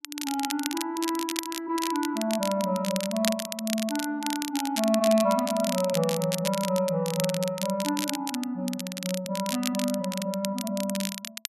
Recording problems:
crackling; vinyl, SNR 6 dB

